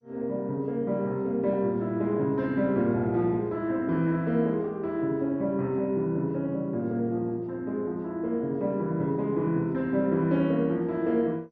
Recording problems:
codec artefacts; MP2, log-spectral distance 2 dB

